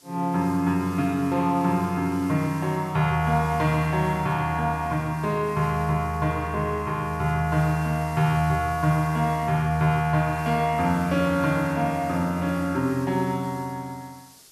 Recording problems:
background hiss; SNR 23 dB

